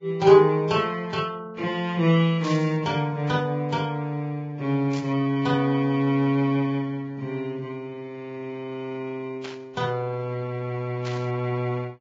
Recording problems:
lossy compression; Vorbis, log-spectral distance 2 dB
static burst; 4 times, first at 2.5 s; peak -9 dB vs average level

